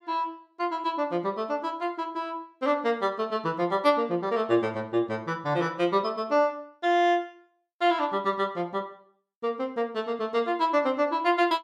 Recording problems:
none

